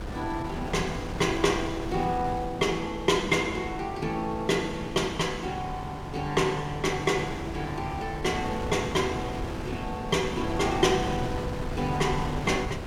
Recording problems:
wind noise; below 520 Hz, SNR 8 dB

